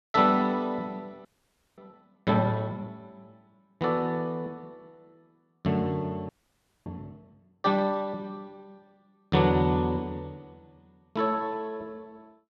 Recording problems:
audio freezing; at 1.5 s for 0.5 s and at 6.5 s for 0.5 s

